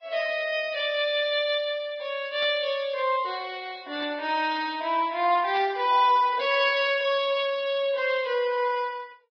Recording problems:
lossy codec; Vorbis, log-spectral distance 3 dB, nothing above 5 kHz
static burst; at 2.5 s, at 4 s and at 5.5 s; peak -10 dB vs average level

